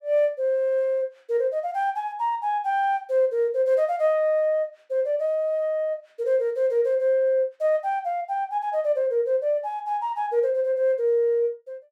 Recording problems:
none

